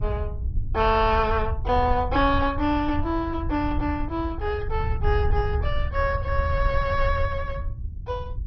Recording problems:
lossy codec; MP2, log-spectral distance 2 dB, nothing above 5.5 kHz
rumble; below 82 Hz, SNR 4 dB

